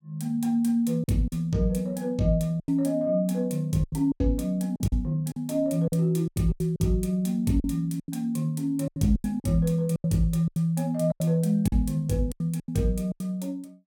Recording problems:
packet loss; 11% of the sound replaced, filled with silence

